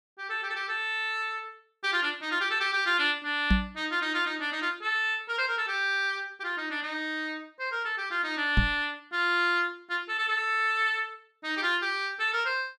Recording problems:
microphone thump; at 3.5 s and at 8.5 s; peak +7 dB vs average level

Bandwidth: 14.5 kHz